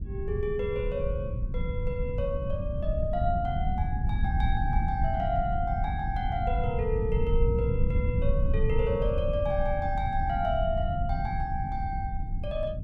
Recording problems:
rumble; below 110 Hz, SNR -1 dB

